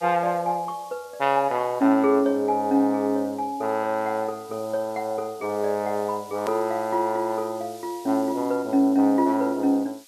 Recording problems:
hiss; slope +4 dB per octave, SNR 24 dB
hard cut with a click; at 6.5 s

